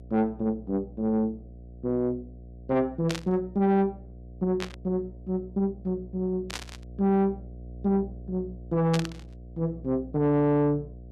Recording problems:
distorted audio; soft clipping, signal-to-distortion ratio 11 dB
electrical hum; 60 Hz, harmonics up to 720 Hz, SNR 17 dB
burst of static; 4 times, first at 3 s; peak -1 dB vs average level

